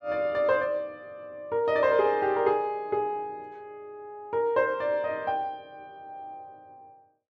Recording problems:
none

